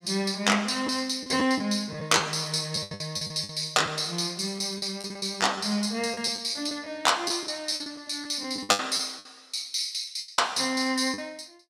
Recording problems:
packet loss; 11% of the sound replaced, filled with the last packet

